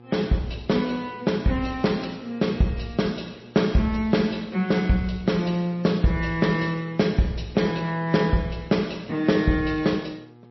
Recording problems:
codec artefacts; G.722, then MP3, log-spectral distance 3 dB, nothing above 5.7 kHz
electrical hum; 60 Hz, harmonics up to 1.7 kHz, SNR 25 dB

